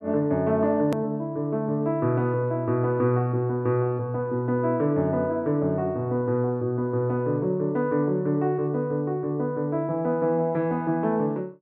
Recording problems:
hard cut with a click; at 1 s

